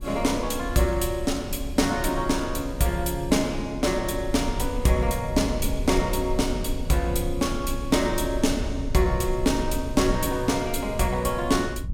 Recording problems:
low-frequency rumble; below 70 Hz, SNR 9 dB

